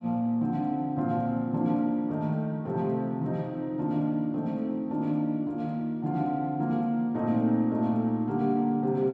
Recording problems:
none

